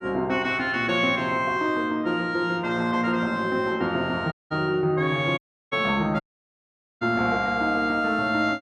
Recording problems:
dropout; at 4.5 s, at 5.5 s and at 6 s for 1 s

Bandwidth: 12.5 kHz